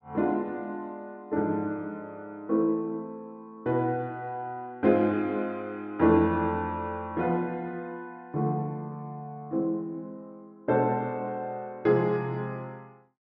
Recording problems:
none

